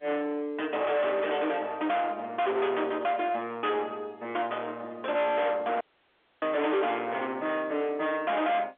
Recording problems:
phone line; 320 Hz to 3.6 kHz, G.711
distorted audio; soft clipping, signal-to-distortion ratio 7 dB
audio cutting out; at 6 s for 0.5 s

